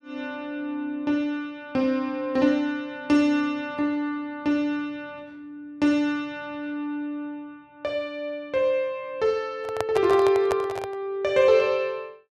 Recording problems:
handling noise; from 9.5 to 11 s; peak +1 dB vs average level

